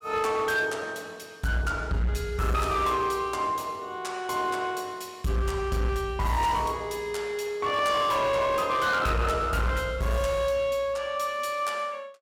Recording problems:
distortion; hard clipping, signal-to-distortion ratio 11 dB

